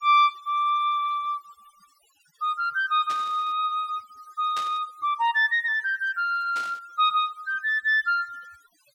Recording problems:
noise reduction artefacts; signal-to-artefact ratio 27 dB
static burst; at 3 s, at 4.5 s and at 6.5 s; peak -9 dB vs average level

